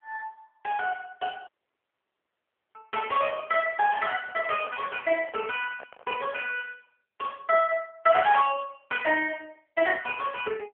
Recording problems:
phone line; 260 Hz to 3.1 kHz, AMR-NB
dropout; at 1.5 s for 1.5 s
microphone handling noise; from 3 to 6.5 s; peak -12 dB vs average level

